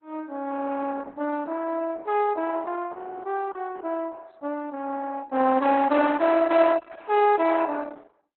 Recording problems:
lossy codec; Opus, log-spectral distance 3 dB, nothing above 4 kHz

